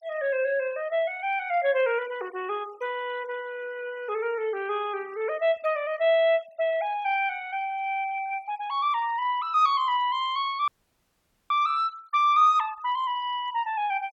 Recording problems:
denoising artefacts; signal-to-artefact ratio 26 dB
dropout; at 11 s for 1 s

